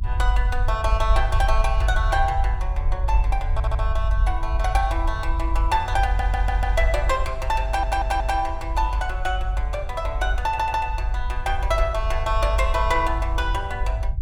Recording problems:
low-frequency rumble; below 56 Hz, strongest tone 48 Hz, SNR 0 dB
stutter; 4 times, first at 3.5 s

